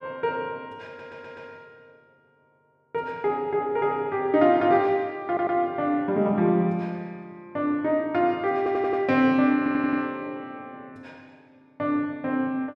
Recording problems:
audio stuttering; 4 times, first at 1 s

